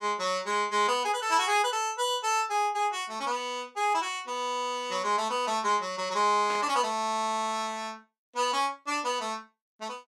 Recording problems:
burst of static; at 6.5 s; peak -7 dB vs average level

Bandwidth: 14.5 kHz